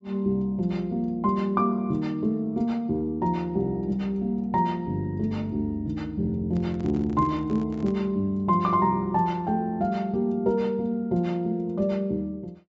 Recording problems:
low-pass filter; nothing above 8 kHz
handling noise; from 6.5 to 8 s; peak -10 dB vs average level

